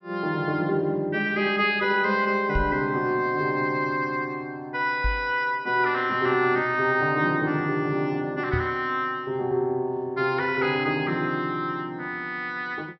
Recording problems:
treble missing; nothing above 5.7 kHz
knock on the microphone; at 2.5 s, at 5 s and at 8.5 s; peak 0 dB vs average level

